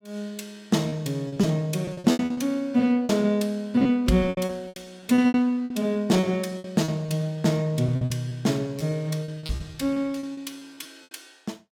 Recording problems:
lost packets; 15% of the sound replaced, filled with repeated pitch periods

